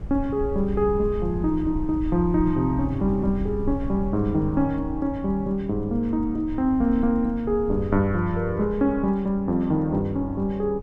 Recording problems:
wind noise; below 100 Hz, SNR 11 dB

